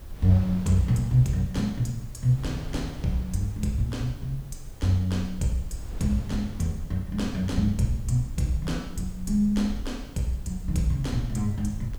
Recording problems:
background hiss; slope +1 dB per octave, SNR 29 dB
low-frequency rumble; below 66 Hz, SNR 15 dB
wind noise; below 180 Hz, SNR 18 dB

